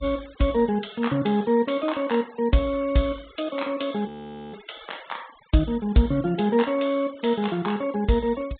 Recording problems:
low-pass filter; nothing above 4 kHz
denoising artefacts; signal-to-artefact ratio 23 dB
audio freezing; at 4 s

